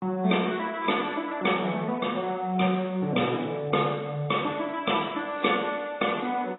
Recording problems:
codec artefacts; AAC, log-spectral distance 4 dB, nothing above 3.8 kHz

